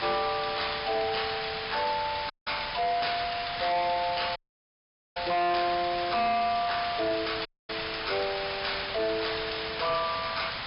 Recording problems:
low-pass filter; nothing above 5.5 kHz
distorted audio; soft clipping, signal-to-distortion ratio 8 dB
background hiss; SNR 5 dB
crackling; at 1 s and from 3.5 to 5.5 s; loose cable, SNR 19 dB
dropout; at 2.5 s, at 4.5 s for 1 s and at 7.5 s

